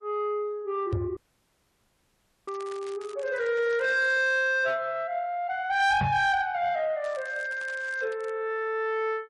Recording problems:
lossy compression; MP3, then Opus, log-spectral distance 2 dB, nothing above 10.4 kHz
distorted audio; soft clipping, signal-to-distortion ratio 11 dB
microphone thump; at 1 s and at 6 s; peak +2 dB vs average level
audio cutting out; at 1 s for 1.5 s
crackle; from 2.5 to 4 s and from 7 to 8.5 s; loose cable, SNR 23 dB

